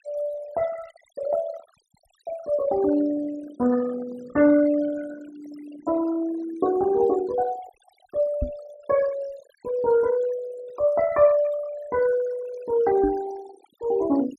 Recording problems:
denoising artefacts; signal-to-artefact ratio 17 dB
knock on the microphone; at 8.5 s and at 13 s; peak +1 dB vs average level

